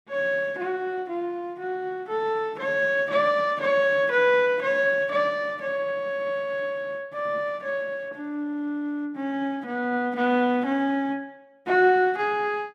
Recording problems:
none

